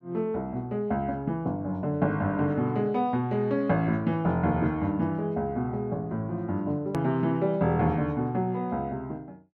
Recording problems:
click at an edit; at 7 s

